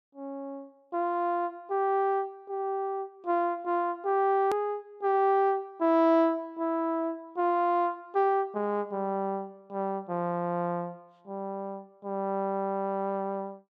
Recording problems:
hard cut with a click; at 4.5 s

